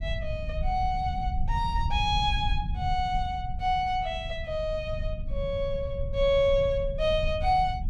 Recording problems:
rumble; below 80 Hz, SNR 6 dB

